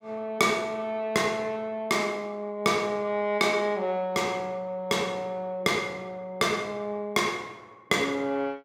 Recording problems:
none

